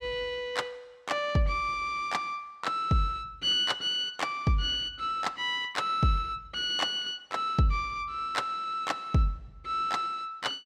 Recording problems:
none

